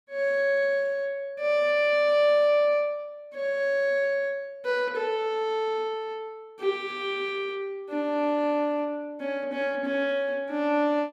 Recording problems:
none

